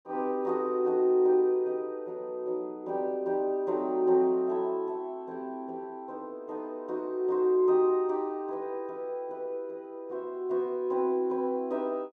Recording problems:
none

